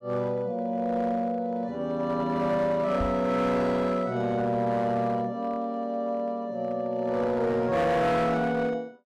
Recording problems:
distorted audio; hard clipping, uneven, signal-to-distortion ratio 11 dB
microphone thump; at 3 s; peak -1 dB vs average level

